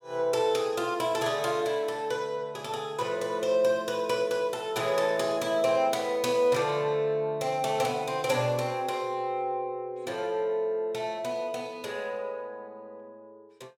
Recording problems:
none

